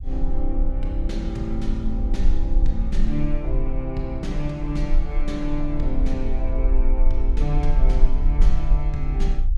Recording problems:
rumble; below 40 Hz, strongest tone 18 Hz, SNR -4 dB

